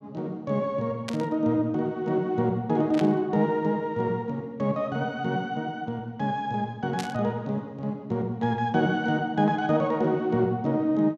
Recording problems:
burst of static; at 1 s, at 3 s and at 7 s; peak -4 dB vs average level

